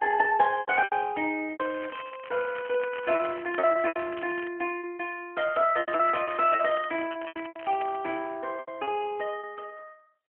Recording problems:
phone line; 280 Hz to 3.3 kHz, AMR-NB
packet loss; 11% of the sound replaced, filled with repeated pitch periods
crackle; from 1.5 to 4.5 s and from 6 to 8 s; loose cable, SNR 17 dB

